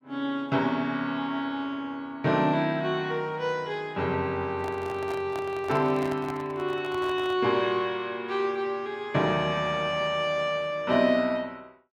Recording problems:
handling noise; from 4.5 to 7.5 s; peak -6 dB vs average level

